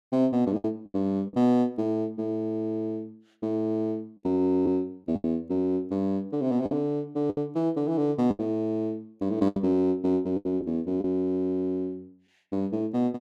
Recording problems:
lost packets; 5% of the sound replaced, filled with the last packet

